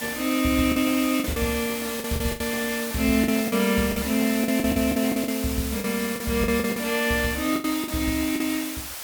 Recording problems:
hiss; SNR 7 dB
packet loss; 11% of the sound replaced, filled with the last packet

